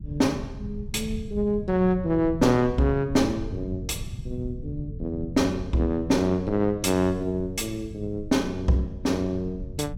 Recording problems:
rumble; below 130 Hz, SNR 12 dB

